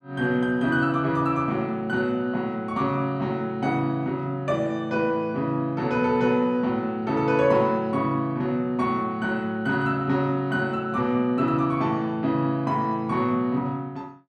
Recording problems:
none

